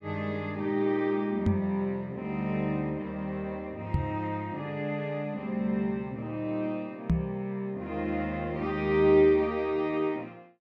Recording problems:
microphone thump; at 1.5 s, at 4 s and at 7 s; peak +7 dB vs average level

